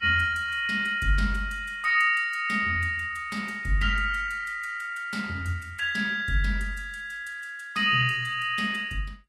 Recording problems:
codec artefacts; Vorbis, log-spectral distance 3 dB, nothing above 13.8 kHz

